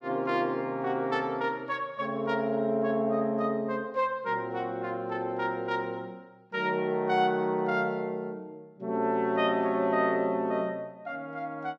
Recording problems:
none

